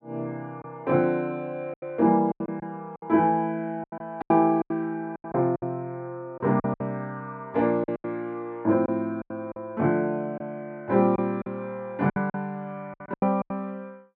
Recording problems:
packet loss; 11% of the sound replaced, filled with silence

